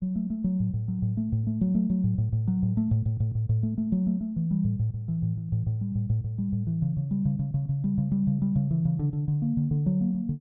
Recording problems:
none

